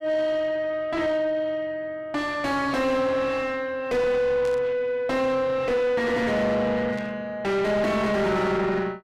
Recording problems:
distortion; soft clipping, signal-to-distortion ratio 5 dB
burst of static; at 4.5 s and at 7 s; peak -15 dB vs average level

